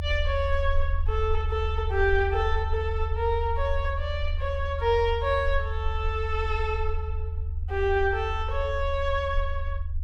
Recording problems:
rumble; below 78 Hz, SNR 3 dB

